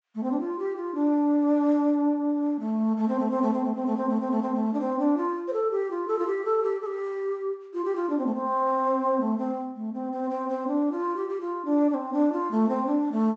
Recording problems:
treble missing; nothing above 8 kHz

